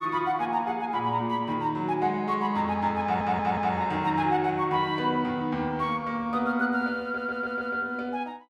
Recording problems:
stutter; at 3 s and at 7 s

